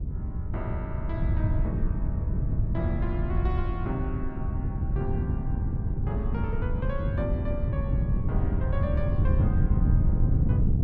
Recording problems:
wind noise; below 130 Hz, SNR -9 dB

